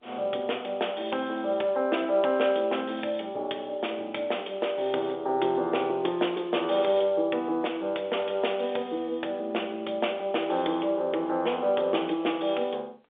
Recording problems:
phone line; 320 Hz to 3.6 kHz, G.711

